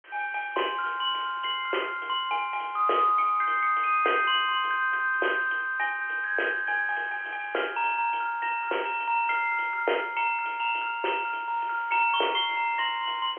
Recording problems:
phone line; 300 Hz to 3.3 kHz, G.711
hiss; SNR 24 dB

